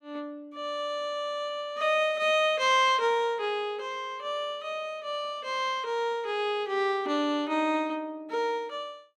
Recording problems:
none

